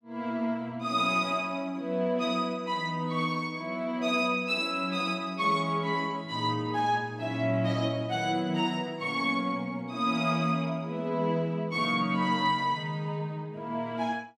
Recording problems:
none

